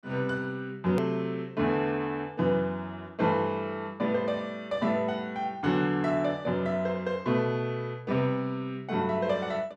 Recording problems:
edit click; at 1 s

